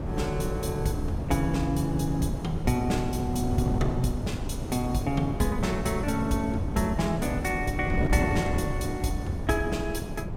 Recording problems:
mains hum; 60 Hz, harmonics up to 480 Hz, SNR 21 dB
wind noise; below 270 Hz, SNR 3 dB

